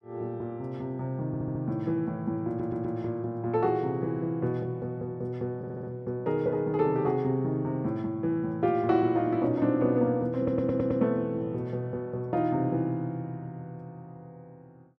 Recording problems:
stutter; 4 times, first at 1.5 s

